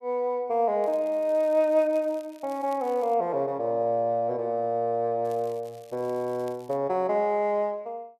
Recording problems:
crackle; from 1 to 3 s and from 5.5 to 7 s; loose cable, SNR 29 dB

